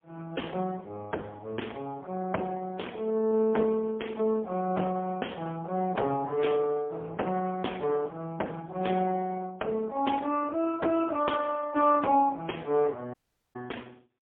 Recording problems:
phone line; 260 Hz to 3.3 kHz, AMR-NB, then MP3
dropout; at 13 s

